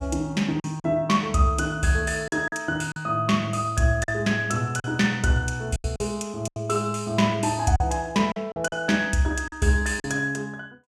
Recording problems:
packet loss; 7% of the sound replaced, filled with silence

